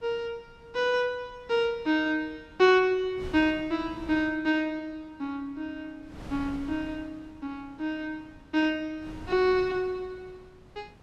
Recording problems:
wind on the microphone; below 430 Hz, SNR 21 dB

